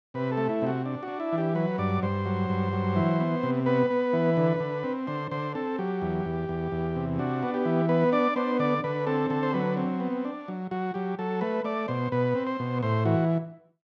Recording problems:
none

